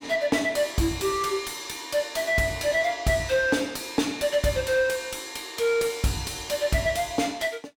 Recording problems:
distortion; soft clipping, signal-to-distortion ratio 10 dB

